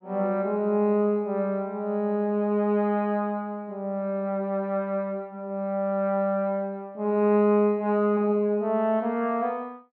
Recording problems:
none

